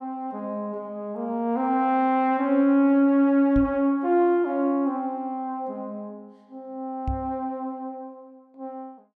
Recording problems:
knock on the microphone; at 3.5 s and at 7 s; peak -3 dB vs average level

